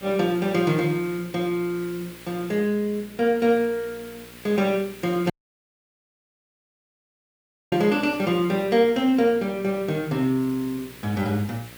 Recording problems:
electrical hum; 60 Hz, harmonics up to 1.2 kHz, SNR 25 dB
hiss; SNR 20 dB
dropout; at 5.5 s for 2.5 s

